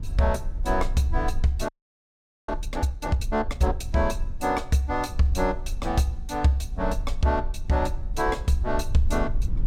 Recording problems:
low-frequency rumble; below 52 Hz, SNR 7 dB
frozen audio; at 1.5 s for 1 s

